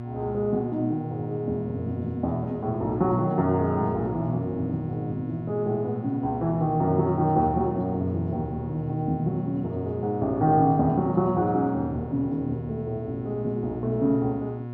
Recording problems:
hum; 60 Hz, harmonics up to 1.1 kHz, SNR 9 dB

